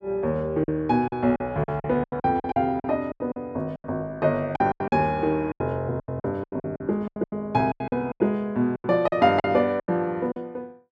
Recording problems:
lost packets; 17% of the sound replaced, filled with silence

